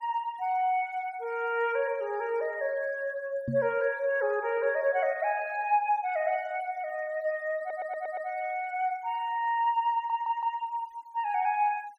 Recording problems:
noise reduction artefacts; signal-to-artefact ratio 26 dB
microphone thump; at 3.5 s; peak 0 dB vs average level
audio stuttering; at 7.5 s and at 10 s

